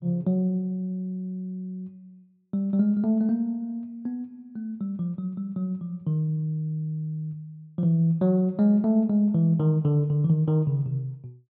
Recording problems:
none

